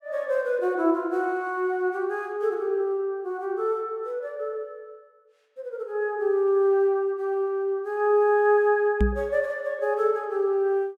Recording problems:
knock on the microphone; at 9 s; peak +5 dB vs average level

